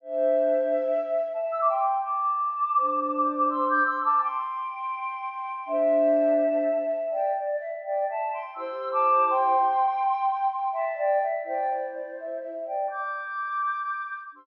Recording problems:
low-pass filter; nothing above 6.8 kHz

